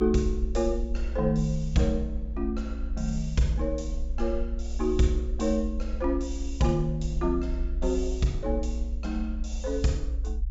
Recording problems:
treble cut off; nothing above 8 kHz
rumble; below 58 Hz, SNR 4 dB

